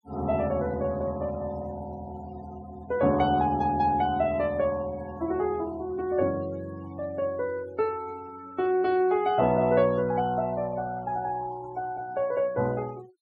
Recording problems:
denoising artefacts; signal-to-artefact ratio 22 dB

